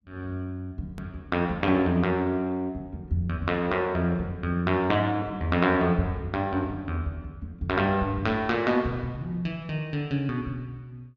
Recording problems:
low-pass filter; nothing above 8 kHz
edit click; at 1 s

